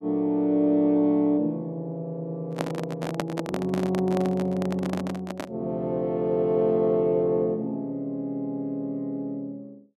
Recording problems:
microphone handling noise; from 2.5 to 5.5 s; peak +2 dB vs average level

